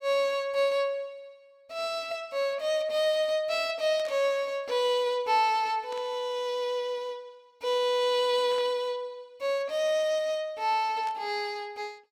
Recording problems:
static burst; 4 times, first at 4 s; peak -14 dB vs average level

